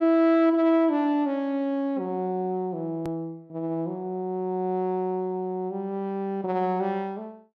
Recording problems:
hard cut with a click; at 3 s

